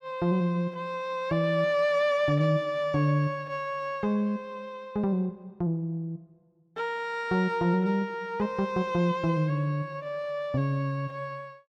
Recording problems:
none

